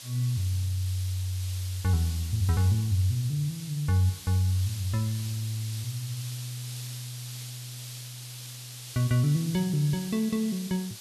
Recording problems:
hiss; SNR 12 dB

